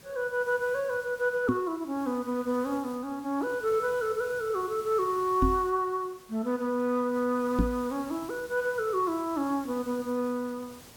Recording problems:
background hiss; slope -2 dB per octave, SNR 20 dB
knock on the microphone; at 1.5 s, at 5.5 s and at 7.5 s; peak +7 dB vs average level

